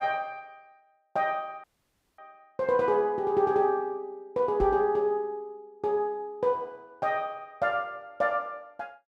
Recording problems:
audio cutting out; at 1.5 s for 0.5 s
microphone bump; at 4.5 s; peak -4 dB vs average level

